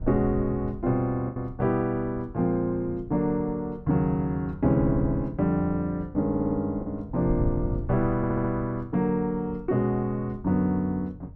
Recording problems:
wind noise; below 100 Hz, SNR 13 dB
lost packets; 1.1% of the sound replaced, filled with the last packet
audio stuttering; at 6.5 s and at 8 s

